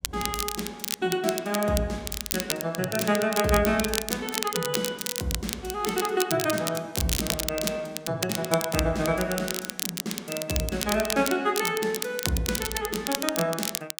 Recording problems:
crackling; vinyl, SNR 3 dB

